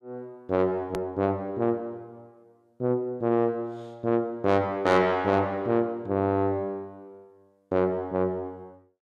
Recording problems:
distortion; soft clipping, signal-to-distortion ratio 10 dB
click at an edit; at 1 s

